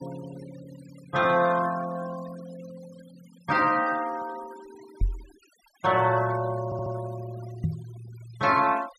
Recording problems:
denoising artefacts; signal-to-artefact ratio 20 dB
microphone bump; at 5 s and at 7.5 s; peak +3 dB vs average level
audio stuttering; at 6.5 s

